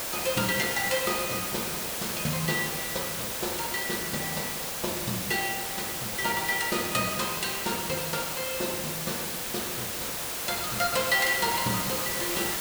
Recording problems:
hiss; slope -1 dB per octave, SNR 0 dB

